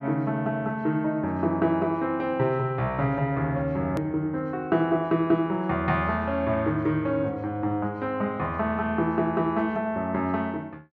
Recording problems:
edit click; at 4 s

